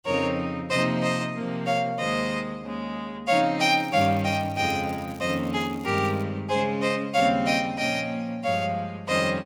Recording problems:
crackling; from 3.5 to 6 s; loose cable, SNR 25 dB

